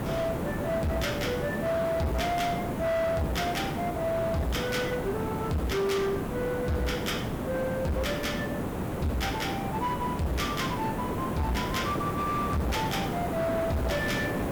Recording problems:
distorted audio; hard clipping, signal-to-distortion ratio 10 dB
background hiss; slope -9 dB per octave, SNR 2 dB

